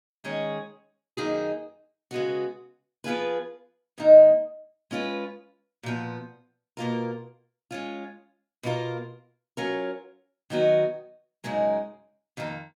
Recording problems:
none

